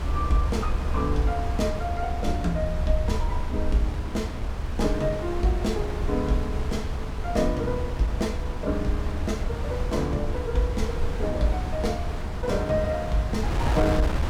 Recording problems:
rumble; below 70 Hz, SNR 5 dB
wind noise; below 260 Hz, SNR 4 dB

